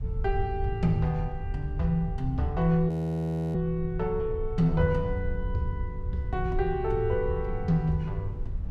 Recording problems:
rumble; below 84 Hz, SNR 7 dB
wind on the microphone; below 130 Hz, SNR 15 dB
audio freezing; at 3 s for 0.5 s

